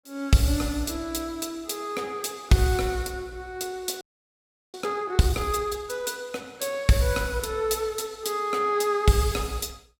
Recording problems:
frozen audio; at 4 s for 0.5 s

